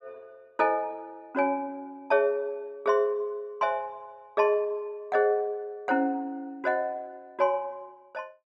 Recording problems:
none

